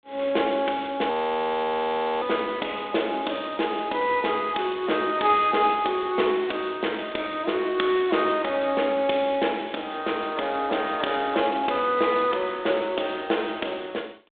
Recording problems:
phone line; 240 Hz to 3.6 kHz, G.726
audio freezing; at 1 s for 1 s

